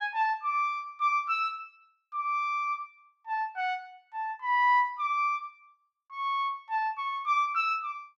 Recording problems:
none

